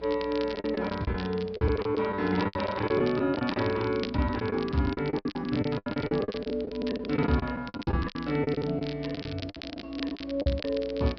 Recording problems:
low-pass filter; nothing above 5.5 kHz
electrical hum; 60 Hz, harmonics up to 660 Hz, SNR 21 dB
wind noise; below 1.1 kHz, SNR 25 dB
crackle; vinyl, SNR 15 dB
packet loss; 19% of the sound replaced, filled with the last packet

